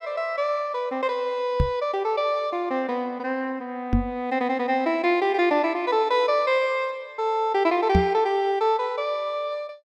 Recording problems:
knock on the microphone; at 1.5 s, at 4 s and at 8 s; peak +7 dB vs average level

